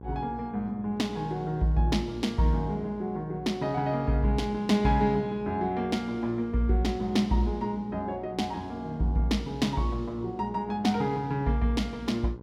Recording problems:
hum; 60 Hz, harmonics up to 1.1 kHz, SNR 16 dB

